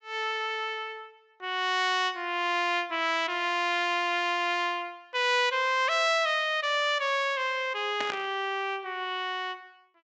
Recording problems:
treble missing; nothing above 8 kHz
burst of static; at 8 s; peak -3 dB vs average level

